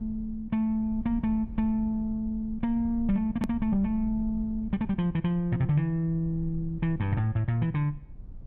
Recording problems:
rumble; below 70 Hz, SNR 15 dB
edit click; at 3.5 s

